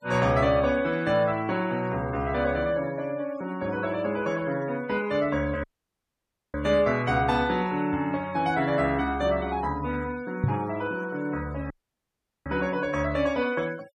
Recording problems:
noise reduction artefacts; signal-to-artefact ratio 21 dB
dropout; at 5.5 s for 1 s and at 12 s for 1 s
knock on the microphone; at 10 s; peak +5 dB vs average level

